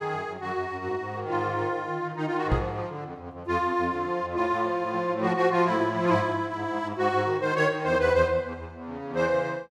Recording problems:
knock on the microphone; at 2.5 s; peak +4 dB vs average level

